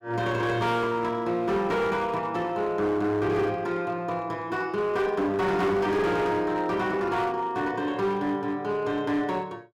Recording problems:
distortion; hard clipping, uneven, signal-to-distortion ratio 10 dB

